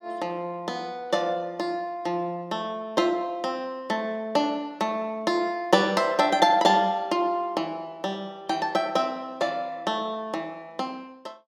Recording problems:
none

